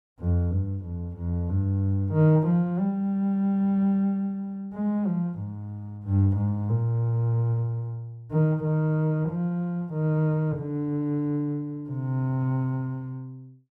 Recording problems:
none

